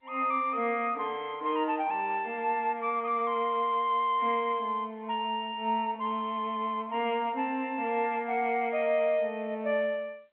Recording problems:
telephone audio; 260 Hz to 3.5 kHz, G.711

